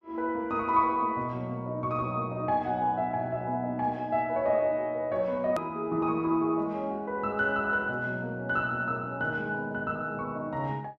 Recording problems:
edit click; at 5.5 s

